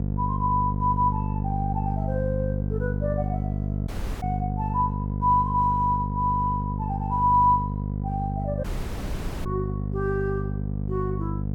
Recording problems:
hum; 50 Hz, harmonics up to 550 Hz, SNR 2 dB
dropout; at 4 s and at 8.5 s for 1 s

